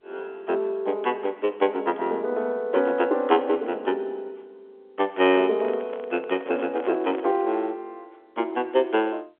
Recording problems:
telephone audio; 300 Hz to 3.4 kHz, G.711
microphone handling noise; from 5 to 7.5 s; peak -7 dB vs average level

